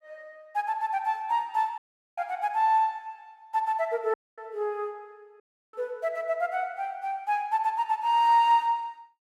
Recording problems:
dropout; at 2 s, at 4 s and at 5.5 s

